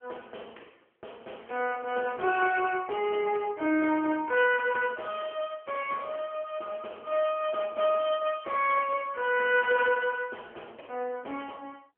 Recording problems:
telephone audio; 260 Hz to 2.9 kHz, AMR-NB

